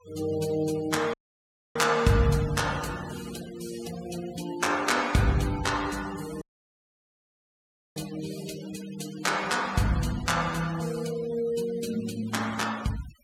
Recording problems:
noise reduction artefacts; signal-to-artefact ratio 15 dB
audio cutting out; at 1 s for 0.5 s and at 6.5 s for 1.5 s

